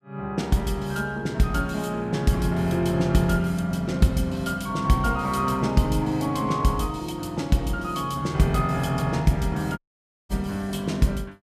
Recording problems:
audio cutting out; at 10 s for 0.5 s

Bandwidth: 14.5 kHz